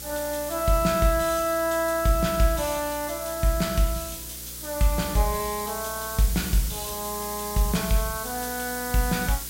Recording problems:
electrical hum; 60 Hz, harmonics up to 540 Hz, SNR 20 dB
hiss; slope +2 dB per octave, SNR 8 dB

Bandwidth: 16 kHz